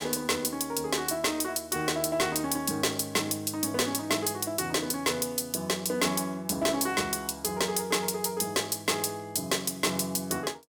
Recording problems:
distorted audio; hard clipping, signal-to-distortion ratio 12 dB

